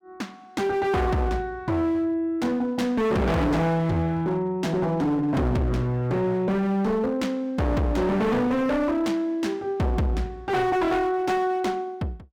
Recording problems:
distortion; hard clipping, signal-to-distortion ratio 6 dB

